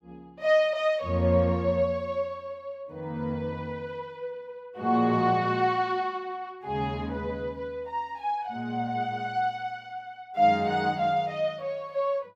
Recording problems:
none

